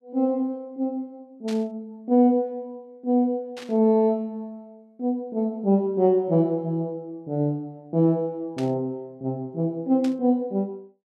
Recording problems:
burst of static; 4 times, first at 1.5 s; peak -10 dB vs average level

